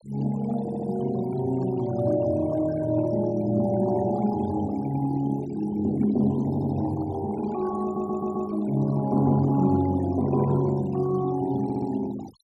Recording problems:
denoising artefacts; signal-to-artefact ratio 20 dB
audio stuttering; 4 times, first at 0.5 s

